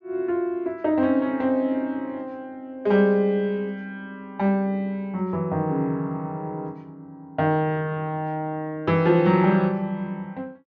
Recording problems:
treble missing; nothing above 7.2 kHz

